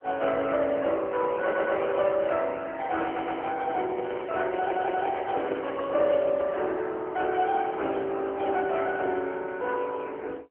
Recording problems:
phone line; 300 Hz to 3.3 kHz, AMR-NB
audio stuttering; at 1.5 s, at 3 s and at 4.5 s
microphone handling noise; from 2.5 to 7 s; peak -2 dB vs average level

